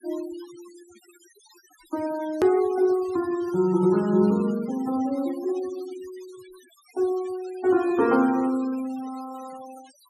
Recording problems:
denoising artefacts; signal-to-artefact ratio 22 dB
hard cut with a click; at 2.5 s

